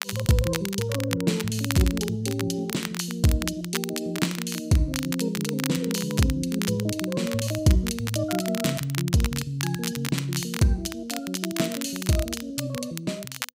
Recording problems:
crackle; vinyl, SNR 8 dB

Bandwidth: 15.5 kHz